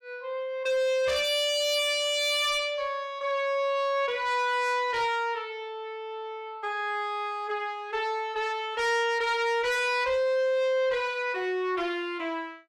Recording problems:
distorted audio; soft clipping, signal-to-distortion ratio 10 dB

